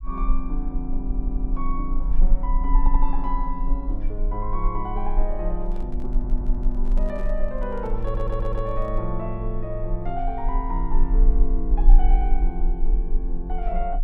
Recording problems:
rumble; below 36 Hz, strongest tone 24 Hz, SNR -4 dB
audio stuttering; 4 times, first at 1 s
microphone handling noise; from 5.5 to 9 s; peak -9 dB vs average level

